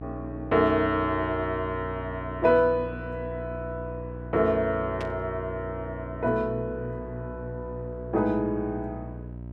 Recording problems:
electrical hum; 60 Hz, harmonics up to 720 Hz, SNR 11 dB
static burst; at 5 s; peak -7 dB vs average level

